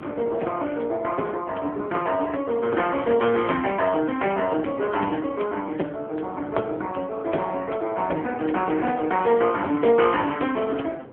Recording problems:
phone line; 280 Hz to 3.3 kHz, AMR-NB
wind noise; below 570 Hz, SNR 16 dB

